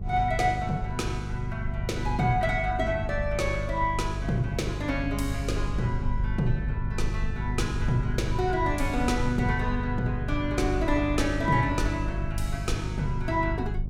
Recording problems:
electrical hum; 50 Hz, harmonics up to 400 Hz, SNR 5 dB
low-frequency rumble; below 68 Hz, SNR 7 dB

